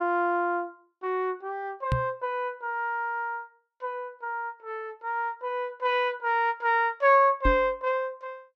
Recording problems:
microphone bump; at 2 s and at 7.5 s; peak +3 dB vs average level

